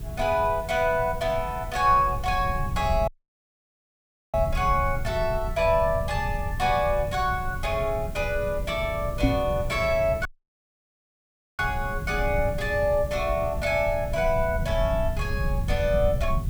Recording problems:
hum; 60 Hz, harmonics up to 420 Hz, SNR 20 dB
background hiss; slope -2 dB per octave, SNR 23 dB
low-frequency rumble; below 110 Hz, SNR 7 dB
dropout; at 3 s for 1.5 s and at 10 s for 1.5 s
knock on the microphone; at 9 s; peak +7 dB vs average level

